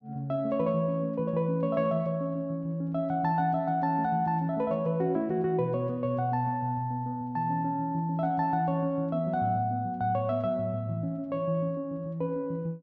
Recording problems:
none

